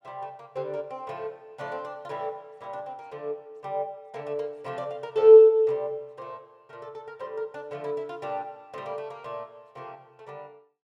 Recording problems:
none

